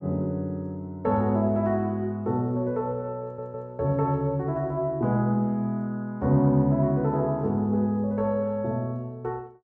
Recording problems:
stutter; at 3 s

